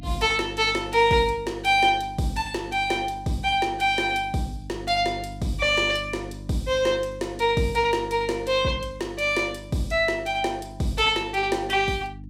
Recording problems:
hum; 50 Hz, harmonics up to 300 Hz, SNR 17 dB

